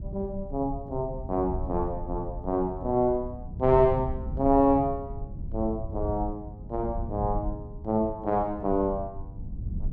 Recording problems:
rumble; below 100 Hz, SNR 10 dB

